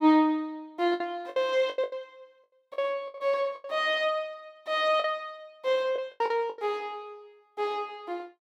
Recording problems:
lost packets; 10% of the sound replaced, filled with the last packet

